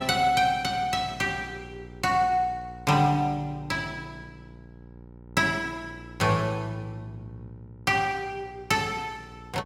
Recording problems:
mains hum; 60 Hz, harmonics up to 960 Hz, SNR 20 dB

